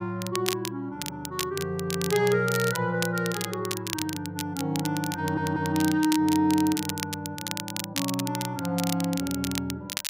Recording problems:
crackling; vinyl, SNR 7 dB
audio stuttering; at 5 s

